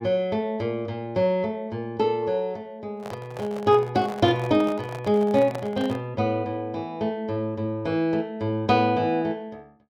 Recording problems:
handling noise; from 3 to 6 s; peak -6 dB vs average level

